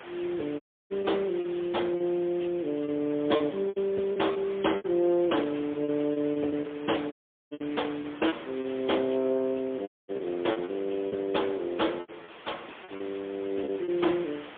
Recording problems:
telephone audio; 220 Hz to 3.5 kHz, AMR-NB, then MP3
hiss; SNR 17 dB
lost packets; 10% of the sound replaced, filled with repeated pitch periods
dropout; at 0.5 s, at 7 s and at 10 s

